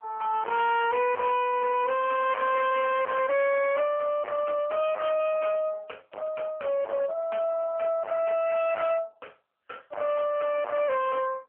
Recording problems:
phone line; 320 Hz to 3.8 kHz, AMR-NB
distortion; hard clipping, signal-to-distortion ratio 4 dB

